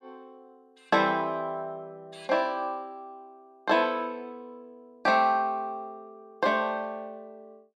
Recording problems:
none

